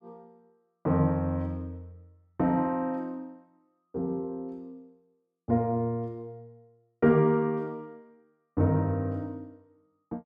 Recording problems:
none

